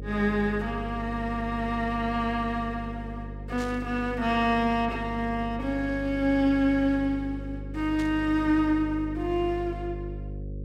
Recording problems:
electrical hum; 50 Hz, harmonics up to 550 Hz, SNR 10 dB
static burst; at 3.5 s and at 8 s; peak -11 dB vs average level

